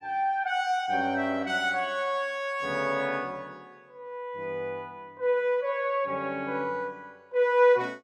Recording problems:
none

